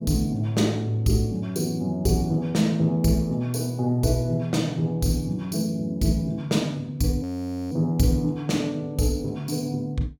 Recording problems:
audio freezing; at 7 s

